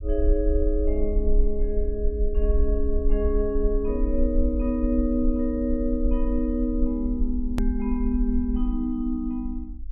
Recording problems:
treble missing; nothing above 3.1 kHz
low-frequency rumble; below 50 Hz, SNR 2 dB
click at an edit; at 7.5 s

